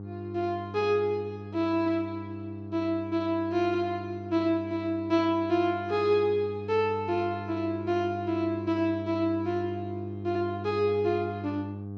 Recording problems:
hum; 50 Hz, harmonics up to 700 Hz, SNR 11 dB

